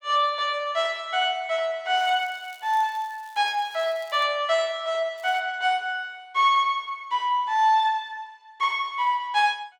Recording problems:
crackle; from 2 to 4 s and at 5 s; loose cable, SNR 28 dB

